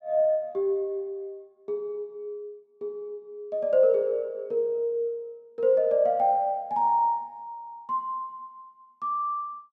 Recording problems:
none

